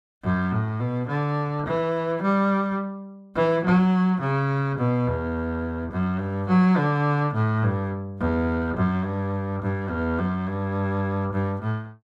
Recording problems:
none

